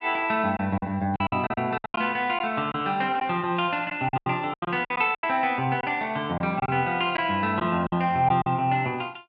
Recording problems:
lost packets; 11% of the sound replaced, filled with silence

